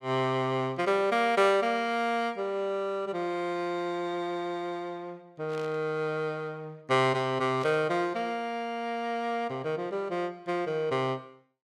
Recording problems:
static burst; at 5.5 s and at 7.5 s; peak -12 dB vs average level

